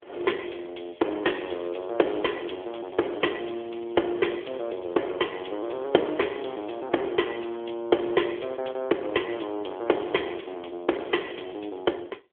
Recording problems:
phone line; 280 Hz to 3.4 kHz, AMR-NB
crackling; from 1 to 7 s and at 10 s; loose cable, SNR 25 dB

